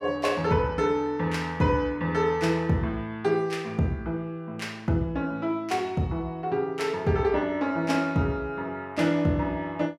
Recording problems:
none

